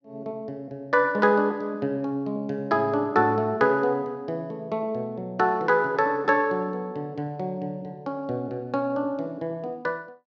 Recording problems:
none

